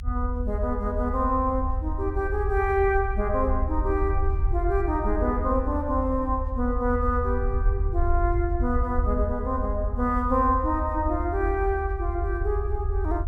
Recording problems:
low-frequency rumble; below 76 Hz, SNR 2 dB

